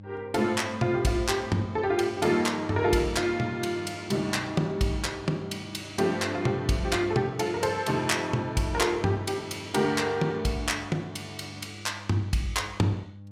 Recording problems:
hum; 50 Hz, harmonics up to 600 Hz, SNR 18 dB

